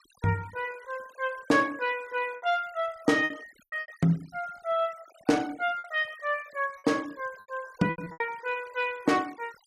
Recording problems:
denoising artefacts; signal-to-artefact ratio 22 dB
packet loss; 7% of the sound replaced, filled with repeated pitch periods

